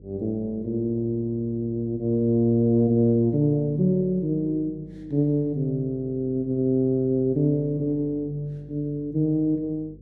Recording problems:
hum; 50 Hz, harmonics up to 500 Hz, SNR 24 dB

